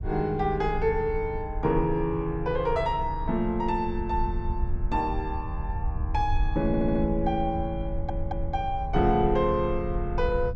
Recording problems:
low-frequency rumble; below 72 Hz, SNR 6 dB
stutter; at 6.5 s and at 8 s

